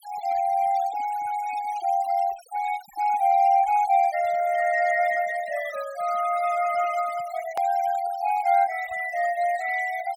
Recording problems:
denoising artefacts; signal-to-artefact ratio 20 dB
click at an edit; at 7.5 s

